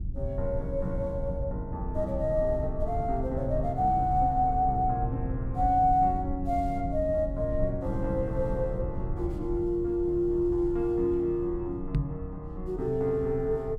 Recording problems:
low-frequency rumble; below 98 Hz, SNR 8 dB
microphone bump; at 12 s; peak +5 dB vs average level

